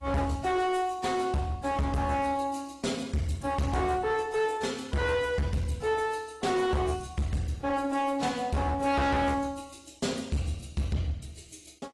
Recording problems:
codec artefacts; AAC, log-spectral distance 3 dB, nothing above 11.3 kHz
distorted audio; hard clipping, uneven, signal-to-distortion ratio 7 dB

